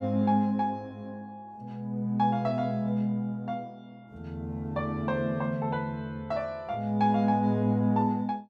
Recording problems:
none

